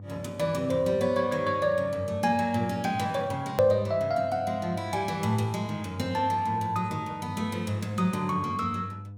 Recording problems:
hum; 50 Hz, harmonics up to 500 Hz, SNR 15 dB
click at an edit; at 3.5 s

